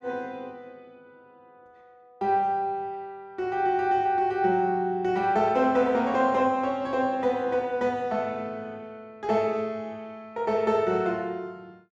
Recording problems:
none

